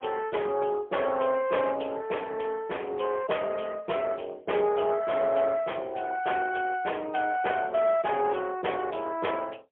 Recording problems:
phone line; 320 Hz to 3.2 kHz, AMR-NB, then MP3

